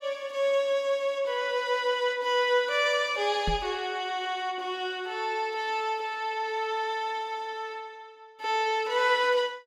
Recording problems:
knock on the microphone; at 3.5 s; peak 0 dB vs average level

